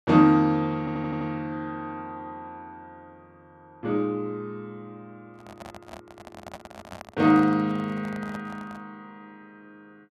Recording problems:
audio stuttering; at 1 s
microphone handling noise; from 5.5 to 9 s; peak -10 dB vs average level

